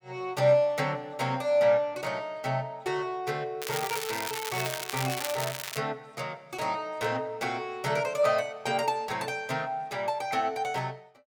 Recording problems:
crackling; from 3.5 to 6 s; loose cable, SNR 5 dB

